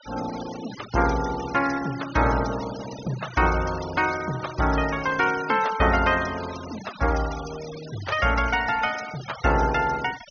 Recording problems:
treble missing; nothing above 6.5 kHz
denoising artefacts; signal-to-artefact ratio 14 dB

